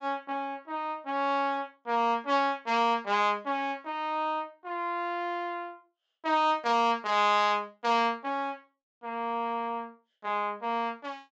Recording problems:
treble missing; nothing above 8 kHz

